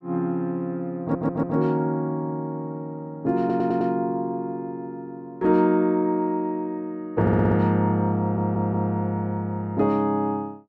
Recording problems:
audio stuttering; 4 times, first at 1 s

